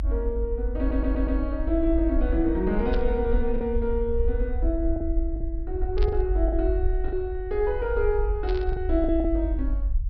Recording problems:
treble cut off; nothing above 5.5 kHz
rumble; below 52 Hz, SNR 2 dB
lost packets; 4% of the sound replaced, filled with the last packet
audio stuttering; at 1 s
burst of static; at 3 s, at 6 s and at 8.5 s; peak -8 dB vs average level

